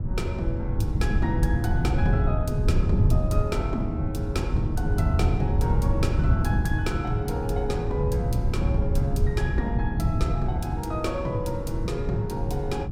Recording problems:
wind on the microphone; below 130 Hz, SNR -4 dB

